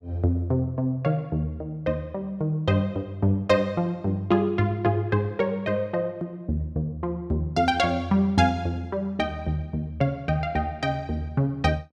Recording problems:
none

